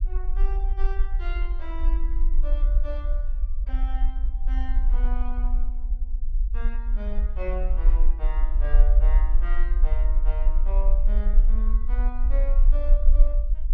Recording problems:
rumble; below 42 Hz, SNR -14 dB

